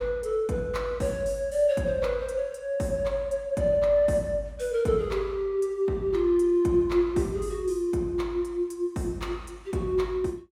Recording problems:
none

